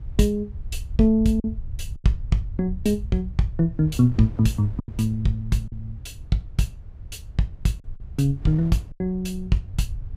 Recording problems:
rumble; below 84 Hz, SNR 13 dB
wind noise; below 150 Hz, SNR 22 dB
packet loss; 3% of the sound replaced, filled with silence

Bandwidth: 15.5 kHz